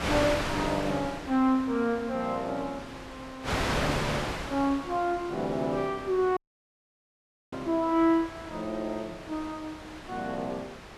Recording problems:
wind noise; below 2.4 kHz, SNR 6 dB
audio cutting out; at 6.5 s for 1 s

